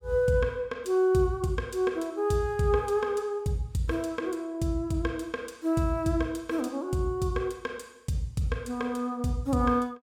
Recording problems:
none

